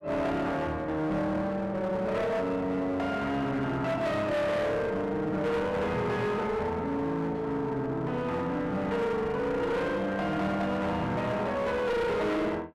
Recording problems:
distortion; hard clipping, uneven, signal-to-distortion ratio 7 dB

